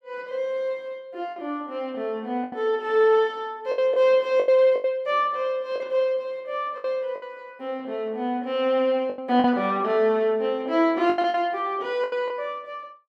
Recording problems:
packet loss; 7% of the sound replaced, filled with the last packet

